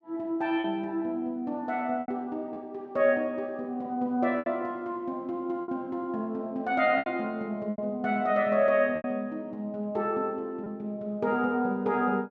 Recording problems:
lost packets; 4% of the sound replaced, filled with repeated pitch periods

